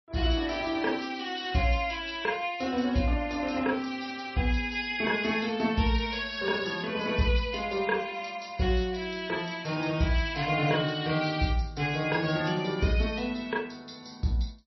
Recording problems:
codec artefacts; MP3, log-spectral distance 5 dB, nothing above 5.7 kHz

